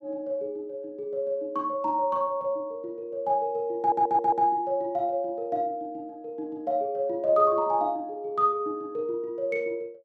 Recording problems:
audio stuttering; at 4 s

